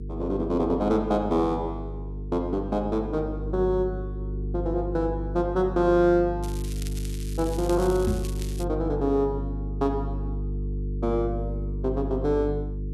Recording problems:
hum; 50 Hz, harmonics up to 450 Hz, SNR 6 dB
crackling; from 6.5 to 8.5 s; loose cable, SNR 16 dB
microphone thump; at 8 s; peak +3 dB vs average level

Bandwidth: 12.5 kHz